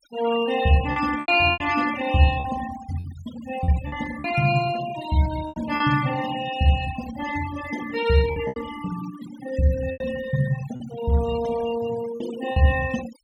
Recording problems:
denoising artefacts; signal-to-artefact ratio 12 dB
packet loss; 6% of the sound replaced, filled with repeated pitch periods

